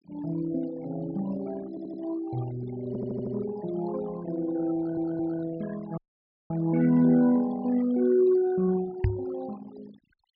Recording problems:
treble missing; nothing above 5.5 kHz
denoising artefacts; signal-to-artefact ratio 18 dB
audio stuttering; at 1.5 s, at 3 s and at 5 s
dropout; at 6 s for 0.5 s
knock on the microphone; at 9 s; peak +5 dB vs average level

